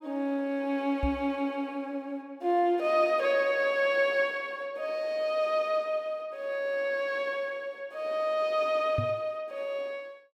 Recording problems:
microphone thump; at 1 s and at 9 s; peak +2 dB vs average level

